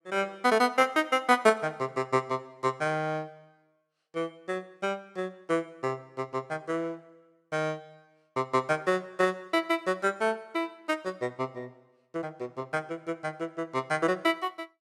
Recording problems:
none

